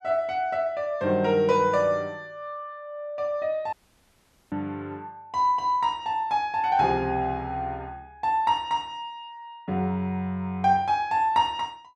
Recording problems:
audio cutting out; at 3.5 s for 1 s

